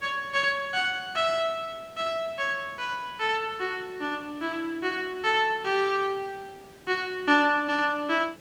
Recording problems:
background hiss; SNR 25 dB

